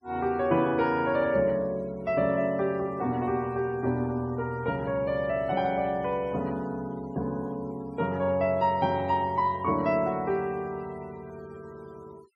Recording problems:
noise reduction artefacts; signal-to-artefact ratio 27 dB

